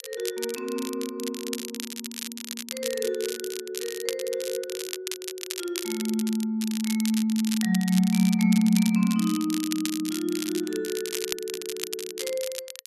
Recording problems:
crackle; vinyl, SNR 8 dB

